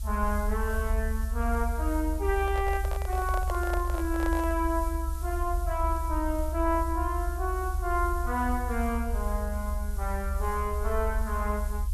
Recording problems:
background hiss; SNR 16 dB
low-frequency rumble; below 68 Hz, SNR 1 dB
handling noise; from 2.5 to 4.5 s; peak -1 dB vs average level

